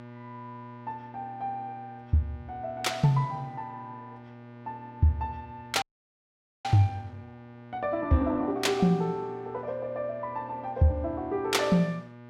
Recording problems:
hum; 60 Hz, harmonics up to 2.4 kHz, SNR 18 dB
frozen audio; at 6 s for 1 s

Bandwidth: 16.5 kHz